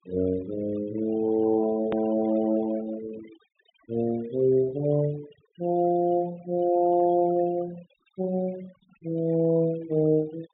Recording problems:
treble missing; nothing above 4 kHz
noise reduction artefacts; signal-to-artefact ratio 21 dB
hard cut with a click; at 2 s

